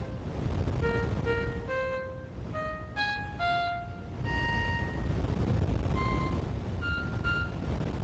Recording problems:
lossy codec; Speex, log-spectral distance 3 dB, nothing above 7.3 kHz
hum; 60 Hz, harmonics up to 600 Hz, SNR 17 dB
wind on the microphone; below 360 Hz, SNR 0 dB

